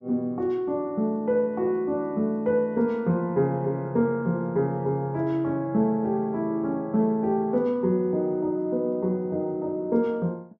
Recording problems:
treble missing; nothing above 8 kHz

